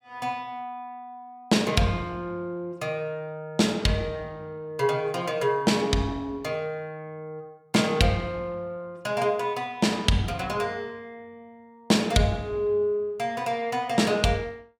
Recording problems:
none

